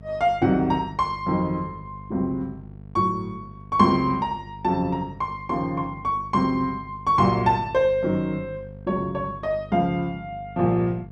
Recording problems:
hum; 50 Hz, harmonics up to 700 Hz, SNR 18 dB

